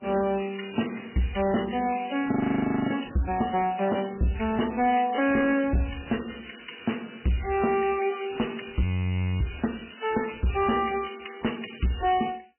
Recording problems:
lossy codec; MP3, log-spectral distance 10 dB, nothing above 3 kHz
distortion; hard clipping, signal-to-distortion ratio 8 dB
frozen audio; at 2.5 s for 0.5 s and at 9 s for 0.5 s

